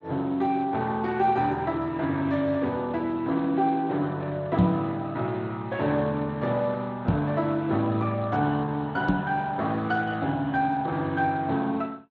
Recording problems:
lossy compression; Speex, log-spectral distance 2 dB
knock on the microphone; at 4.5 s, at 7 s and at 9 s; peak +9 dB vs average level

